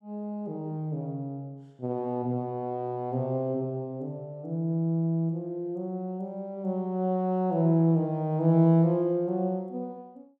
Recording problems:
none

